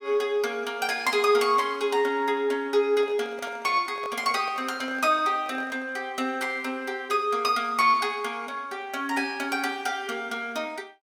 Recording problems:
handling noise; from 3 to 6 s; peak -10 dB vs average level

